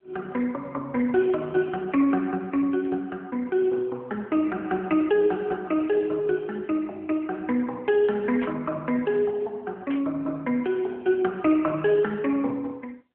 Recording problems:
phone line; 260 Hz to 3.1 kHz, AMR-NB
burst of static; at 8.5 s and at 10 s; peak -7 dB vs average level

